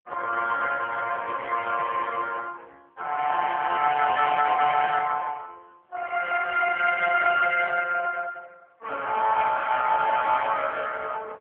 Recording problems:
telephone audio; 260 Hz to 3.1 kHz, AMR-NB

